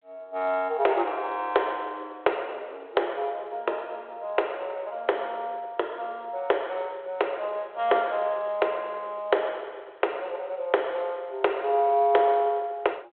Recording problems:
telephone audio; 340 Hz to 3.7 kHz, G.726

